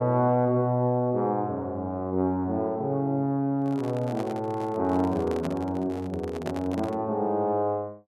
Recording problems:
microphone handling noise; from 3.5 to 7 s; peak -4 dB vs average level

